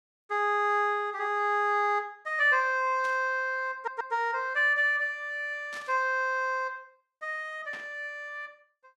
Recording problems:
static burst; at 3 s, at 5.5 s and at 7.5 s; peak -13 dB vs average level
stutter; at 4 s

